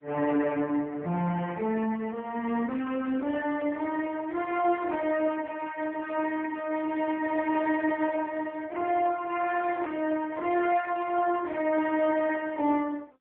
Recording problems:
phone line; 220 Hz to 3.4 kHz, AMR-NB

